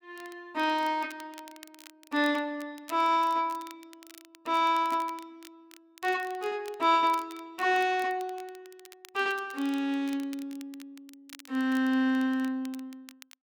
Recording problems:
crackle; vinyl, SNR 23 dB

